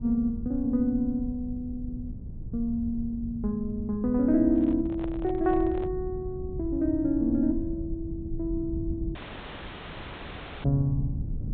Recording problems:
treble missing; nothing above 4 kHz
rumble; below 120 Hz, SNR 9 dB
microphone handling noise; from 4.5 to 6 s; peak -9 dB vs average level
dropout; at 9 s for 1.5 s

